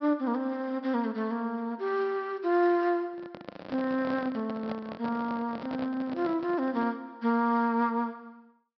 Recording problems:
treble missing; nothing above 5.5 kHz
handling noise; from 3 to 7 s; peak -5 dB vs average level

